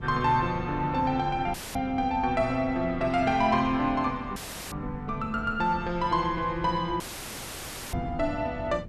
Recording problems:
wind noise; below 170 Hz, SNR 14 dB
audio cutting out; at 1.5 s, at 4.5 s and at 7 s for 1 s; filled with static

